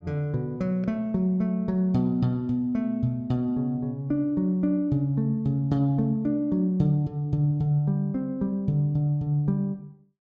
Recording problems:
none

